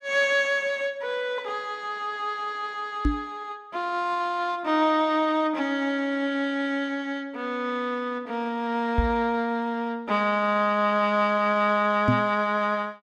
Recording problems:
knock on the microphone; at 3 s, at 9 s and at 12 s; peak +6 dB vs average level

